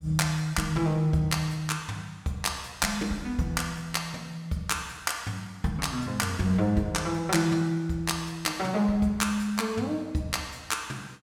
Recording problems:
none

